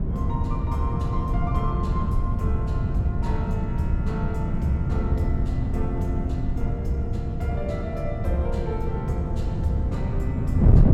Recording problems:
wind on the microphone; below 150 Hz, SNR -4 dB

